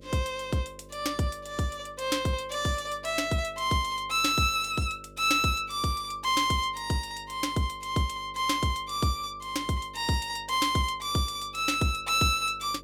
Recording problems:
electrical hum; 50 Hz, harmonics up to 600 Hz, SNR 23 dB

